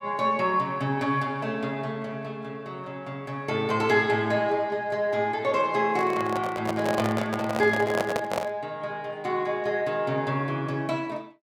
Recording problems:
handling noise; from 6 to 8.5 s; peak +3 dB vs average level

